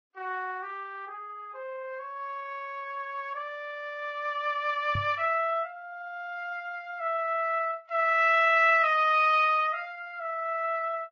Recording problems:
codec artefacts; Vorbis, log-spectral distance 2 dB
microphone thump; at 5 s; peak -3 dB vs average level

